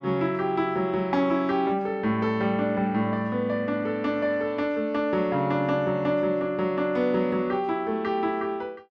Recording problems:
none

